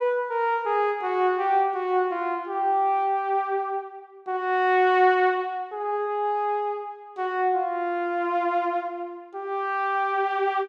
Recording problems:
none

